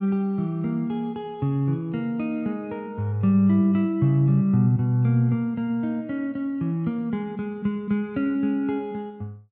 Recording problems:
none

